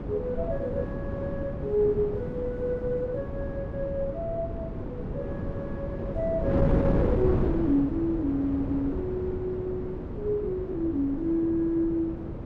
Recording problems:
wind on the microphone; below 360 Hz, SNR 3 dB

